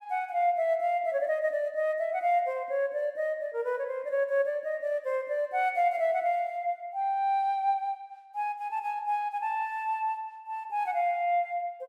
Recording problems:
none

